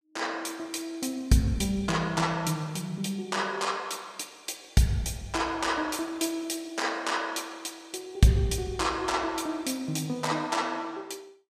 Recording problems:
none

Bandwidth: 15.5 kHz